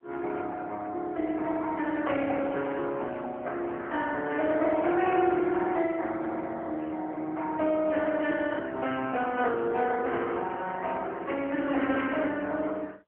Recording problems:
phone line; 260 Hz to 3.4 kHz, AMR-NB

